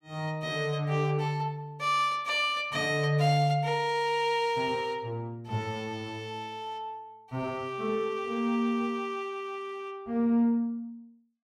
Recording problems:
none

